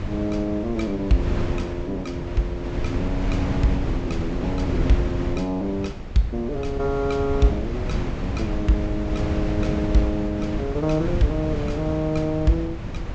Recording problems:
treble missing; nothing above 8 kHz
wind noise; below 210 Hz, SNR 3 dB

